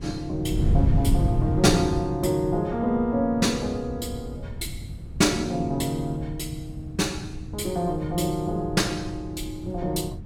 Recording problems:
wind noise; below 140 Hz, SNR 5 dB

